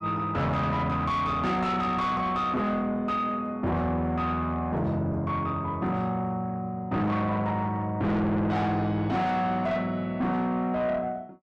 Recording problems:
distorted audio; soft clipping, signal-to-distortion ratio 6 dB

